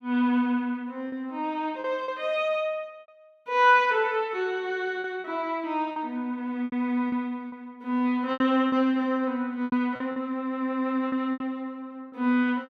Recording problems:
lost packets; 7% of the sound replaced, filled with repeated pitch periods

